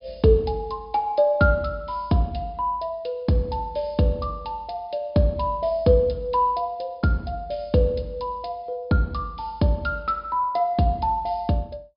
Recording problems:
low-pass filter; nothing above 5.2 kHz

